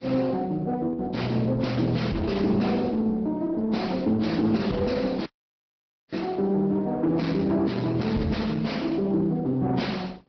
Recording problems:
low-pass filter; nothing above 5.5 kHz
lossy codec; Vorbis, then Opus, log-spectral distance 3 dB
distorted audio; soft clipping, signal-to-distortion ratio 10 dB
audio cutting out; at 5.5 s for 1 s

